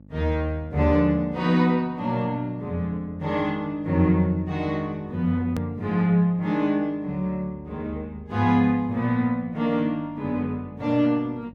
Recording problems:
hum; 50 Hz, harmonics up to 600 Hz, SNR 25 dB
hard cut with a click; at 5.5 s

